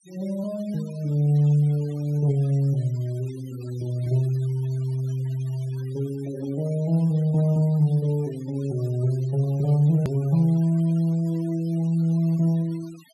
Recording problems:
noise reduction artefacts; signal-to-artefact ratio 26 dB
click at an edit; at 10 s

